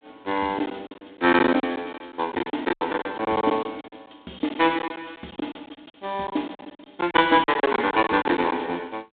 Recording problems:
phone line; 150 Hz to 3.9 kHz, G.726
lost packets; 16% of the sound replaced, filled with silence

